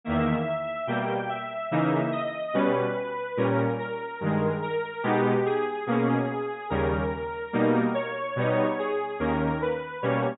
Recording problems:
low-pass filter; nothing above 4 kHz

